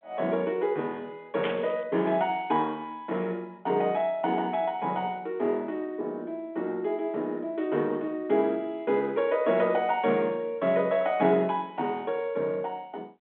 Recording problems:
phone line; 220 Hz to 3.8 kHz, G.726
static burst; at 1.5 s; peak -2 dB vs average level

